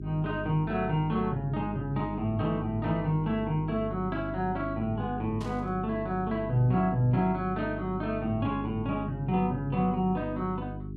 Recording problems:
hum; 50 Hz, harmonics up to 400 Hz, SNR 8 dB
burst of static; at 5.5 s; peak -13 dB vs average level

